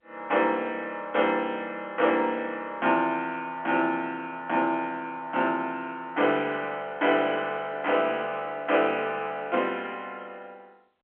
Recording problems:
phone line; 240 Hz to 3.3 kHz, G.711

